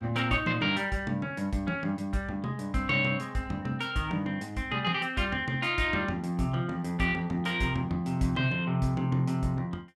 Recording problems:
none

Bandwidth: 14.5 kHz